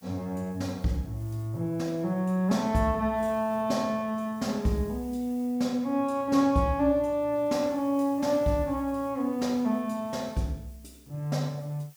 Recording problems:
hiss; slope +2 dB per octave, SNR 27 dB

